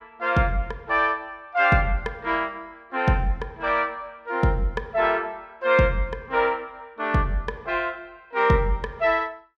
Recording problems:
none

